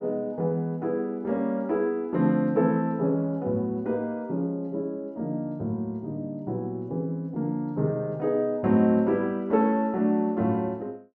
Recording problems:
none

